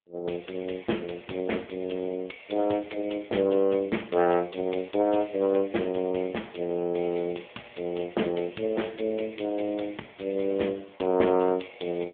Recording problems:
phone line; 240 Hz to 3.4 kHz, AMR-NB

